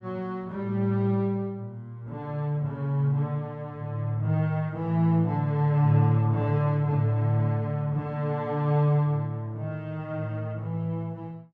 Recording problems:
none

